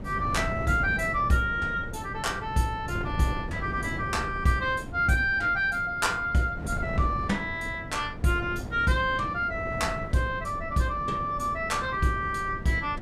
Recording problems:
wind on the microphone; below 270 Hz, SNR 10 dB

